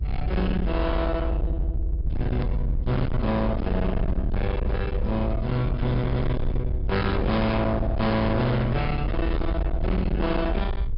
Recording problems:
treble cut off; nothing above 5.5 kHz
distortion; hard clipping, signal-to-distortion ratio 6 dB
hum; 50 Hz, harmonics up to 500 Hz, SNR 23 dB
rumble; below 120 Hz, SNR 2 dB
hard cut with a click; at 2.5 s

